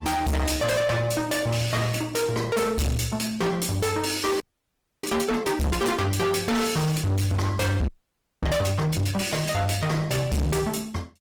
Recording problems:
lossy compression; Opus, log-spectral distance 4 dB, nothing above 19 kHz
distorted audio; hard clipping, uneven, signal-to-distortion ratio 6 dB
audio freezing; at 4.5 s for 0.5 s and at 8 s for 0.5 s

